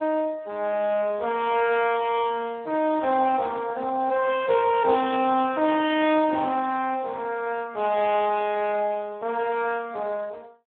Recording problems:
telephone audio; 240 Hz to 3.5 kHz, Speex

